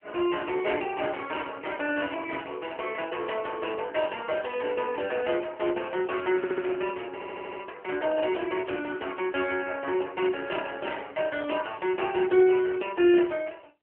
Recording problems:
telephone audio; 300 Hz to 3.1 kHz, AMR-NB
stutter; at 6.5 s and at 7 s

